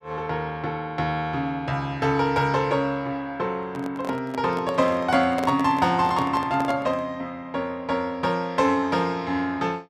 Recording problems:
microphone handling noise; from 3.5 to 7 s; peak -2 dB vs average level

